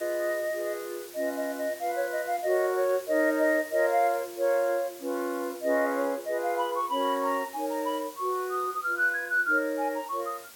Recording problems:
hiss; slope -1 dB per octave, SNR 17 dB

